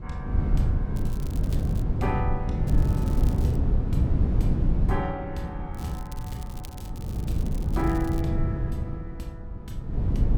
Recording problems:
wind noise; below 140 Hz, SNR -8 dB
crackle; at 1 s, at 2.5 s and from 5.5 to 8 s; loose cable, SNR 14 dB

